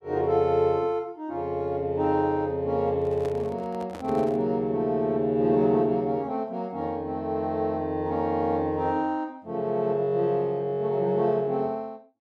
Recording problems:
microphone handling noise; from 3 to 4.5 s; peak -9 dB vs average level

